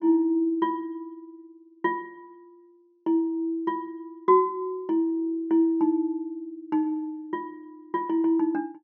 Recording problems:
treble missing; nothing above 6.4 kHz

